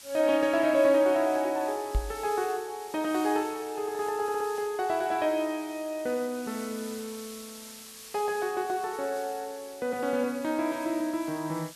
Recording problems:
hiss; slope +2 dB per octave, SNR 17 dB
knock on the microphone; at 2 s; peak +3 dB vs average level
audio stuttering; at 4 s

